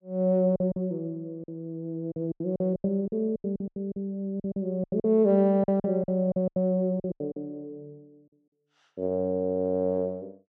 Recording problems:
packet loss; 13% of the sound replaced, filled with silence

